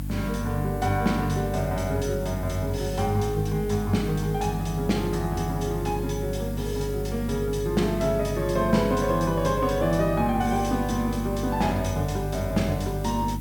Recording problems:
hum; 50 Hz, harmonics up to 300 Hz, SNR 6 dB
background hiss; slope -4 dB per octave, SNR 19 dB

